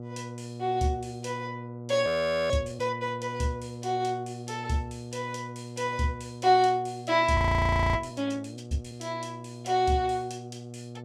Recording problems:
hum; 60 Hz, harmonics up to 720 Hz, SNR 12 dB
frozen audio; at 2 s and at 7.5 s for 0.5 s

